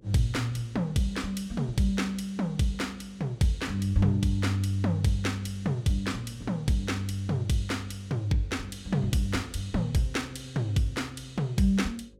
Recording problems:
electrical hum; 50 Hz, harmonics up to 550 Hz, SNR 30 dB

